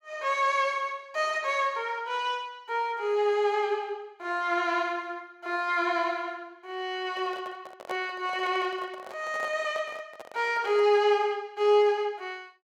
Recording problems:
handling noise; from 7 to 11 s; peak -5 dB vs average level

